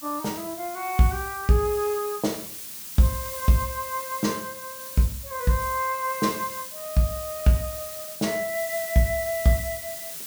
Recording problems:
hiss; SNR 9 dB

